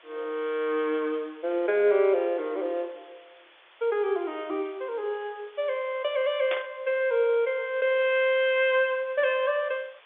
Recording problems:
telephone audio; 320 Hz to 3.6 kHz, G.711
hiss; SNR 27 dB
burst of static; at 6.5 s; peak -2 dB vs average level

